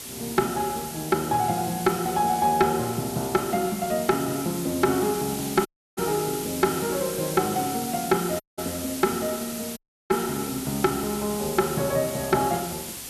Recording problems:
distortion; soft clipping, signal-to-distortion ratio 11 dB
background hiss; SNR 8 dB
audio cutting out; at 5.5 s, at 8.5 s and at 10 s

